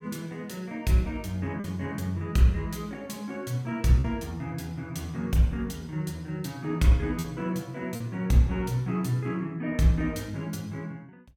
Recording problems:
packet loss; 1.4% of the sound replaced, filled with repeated pitch periods

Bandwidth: 17.5 kHz